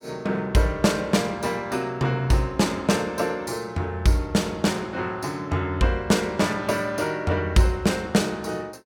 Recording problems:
none

